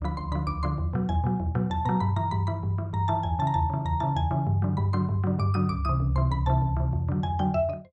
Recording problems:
none

